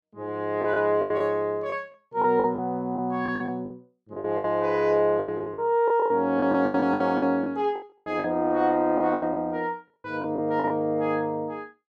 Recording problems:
lost packets; 13% of the sound replaced, filled with the last packet

